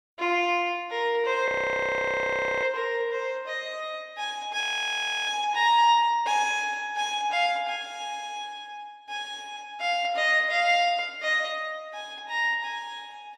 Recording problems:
frozen audio; at 1.5 s for 1 s and at 4.5 s for 0.5 s

